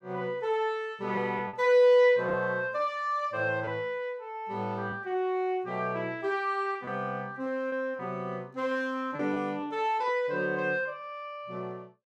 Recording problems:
lost packets; 4% of the sound replaced, filled with repeated pitch periods

